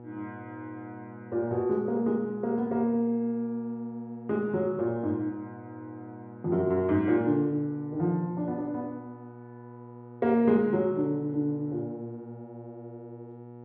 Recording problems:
hum; 60 Hz, harmonics up to 1.3 kHz, SNR 17 dB

